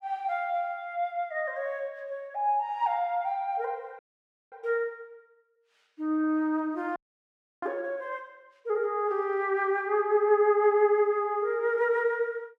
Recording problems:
frozen audio; at 4 s for 0.5 s and at 7 s for 0.5 s

